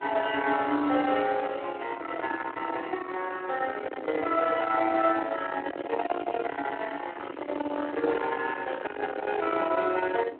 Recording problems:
telephone audio; 240 Hz to 3.5 kHz, Speex
distorted audio; soft clipping, signal-to-distortion ratio 9 dB
wind on the microphone; below 1.3 kHz, SNR 10 dB
crackling; at 4.5 s and from 6 to 9 s; loose cable, SNR 27 dB

